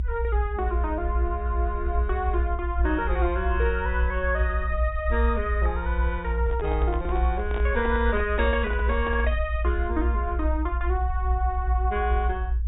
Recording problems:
treble missing; nothing above 4 kHz
low-frequency rumble; below 64 Hz, strongest tone 58 Hz, SNR -1 dB
handling noise; from 6.5 to 9.5 s; peak -4 dB vs average level

